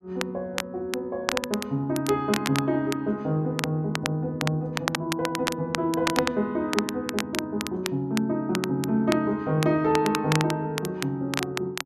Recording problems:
crackling; vinyl, SNR 6 dB

